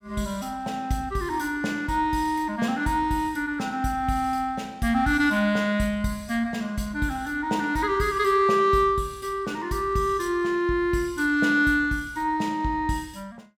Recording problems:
none

